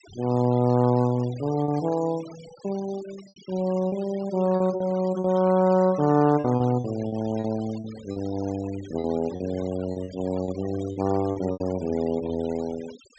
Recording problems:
low-pass filter; nothing above 8 kHz
noise reduction artefacts; signal-to-artefact ratio 20 dB
packet loss; 7% of the sound replaced, filled with repeated pitch periods

